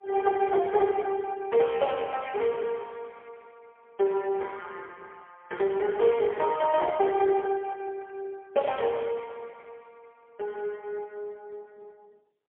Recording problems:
phone line; 340 Hz to 2.6 kHz, AMR-NB, then MP3

